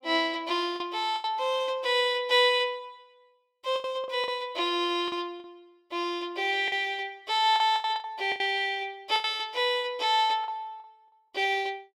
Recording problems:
packet loss; 8% of the sound replaced, filled with the last packet

